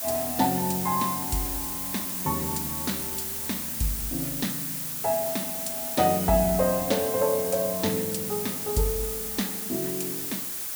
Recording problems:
background hiss; slope 0 dB per octave, SNR 1 dB

